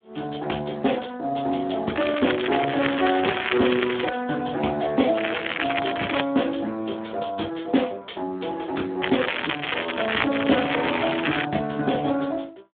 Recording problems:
telephone audio; 170 Hz to 3.5 kHz, Speex
crackle; from 2 to 4 s, from 5 to 6 s and from 9 to 11 s; loose cable, SNR 2 dB

